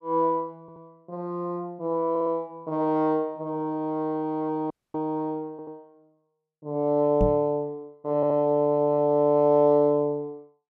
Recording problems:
stutter; 4 times, first at 0.5 s
audio cutting out; at 4.5 s
microphone thump; at 7 s; peak +2 dB vs average level

